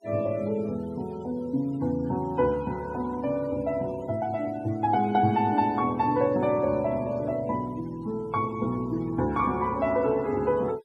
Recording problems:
noise reduction artefacts; signal-to-artefact ratio 25 dB

